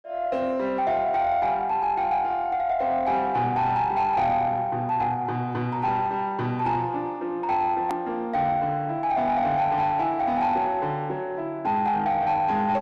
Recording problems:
distortion; soft clipping, signal-to-distortion ratio 11 dB
click at an edit; at 8 s

